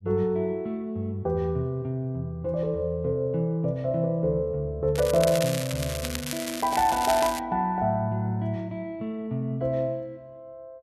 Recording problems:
crackle; from 5 to 7.5 s; loose cable, SNR 7 dB

